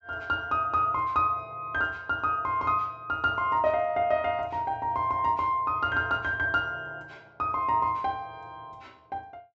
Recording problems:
treble cut off; nothing above 8 kHz

